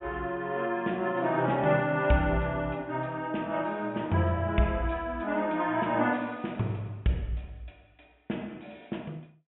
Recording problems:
treble missing; nothing above 3.5 kHz

